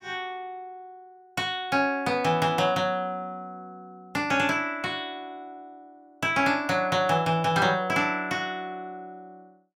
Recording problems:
none

